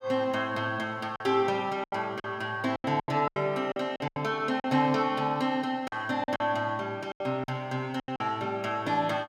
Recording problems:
lost packets; 10% of the sound replaced, filled with silence

